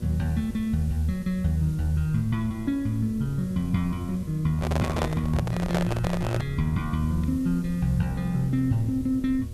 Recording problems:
electrical hum; 60 Hz, harmonics up to 1.2 kHz, SNR 20 dB
background hiss; slope +1 dB per octave, SNR 26 dB
rumble; below 96 Hz, SNR 14 dB
microphone handling noise; from 4.5 to 6.5 s; peak +2 dB vs average level

